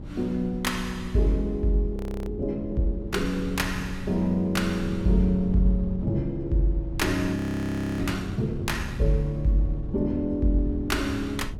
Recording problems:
low-frequency rumble; below 120 Hz, SNR 15 dB
wind on the microphone; below 140 Hz, SNR 13 dB
frozen audio; at 2 s and at 7.5 s for 0.5 s

